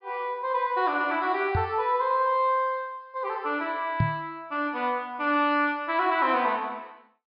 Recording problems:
treble missing; nothing above 5.5 kHz
knock on the microphone; at 1.5 s and at 4 s; peak +5 dB vs average level

